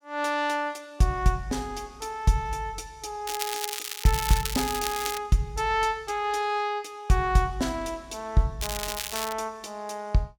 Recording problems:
crackle; from 3.5 to 5 s and at 8.5 s; loose cable, SNR 4 dB

